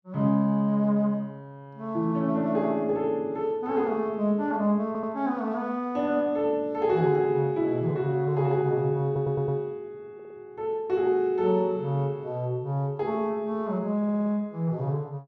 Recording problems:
stutter; 4 times, first at 5 s

